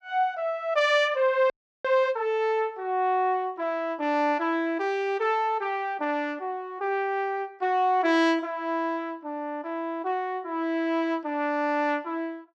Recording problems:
audio freezing; at 1.5 s

